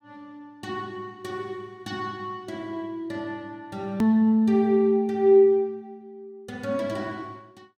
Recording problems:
click at an edit; at 4 s

